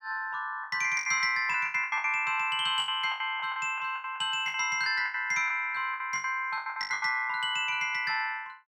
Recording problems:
packet loss; 16% of the sound replaced, filled with the last packet

